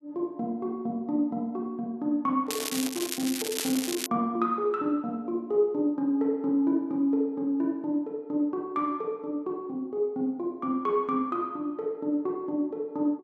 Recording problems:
microphone handling noise; from 2.5 to 4 s; peak -10 dB vs average level
crackling; from 2.5 to 4 s; loose cable, SNR 4 dB

